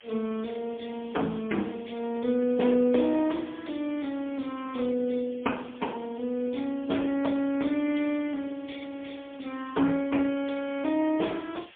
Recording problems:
phone line; 190 Hz to 3.4 kHz, AMR-NB, then MP3
hiss; SNR 23 dB

